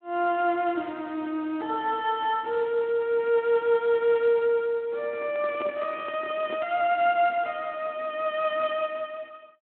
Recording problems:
telephone audio; 220 Hz to 3.7 kHz, Speex
microphone handling noise; from 5 to 6.5 s; peak -8 dB vs average level

